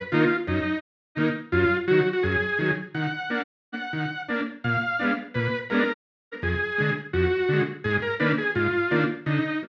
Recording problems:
dropout; at 1 s, at 3.5 s and at 6 s

